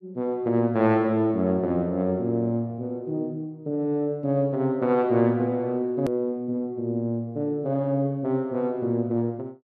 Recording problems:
edit click; at 6 s

